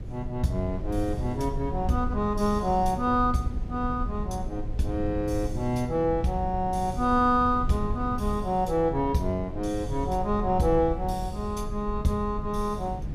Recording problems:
low-frequency rumble; below 100 Hz, SNR 8 dB

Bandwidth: 15.5 kHz